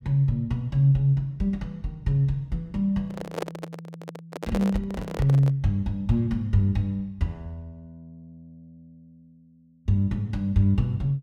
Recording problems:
handling noise; from 3 to 5.5 s; peak -1 dB vs average level

